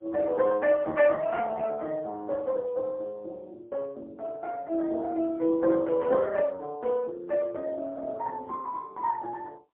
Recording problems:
phone line; 280 Hz to 3 kHz, AMR-NB, then MP3

